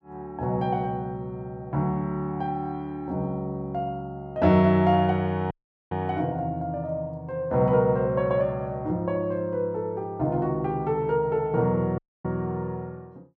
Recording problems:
dropout; at 5.5 s and at 12 s

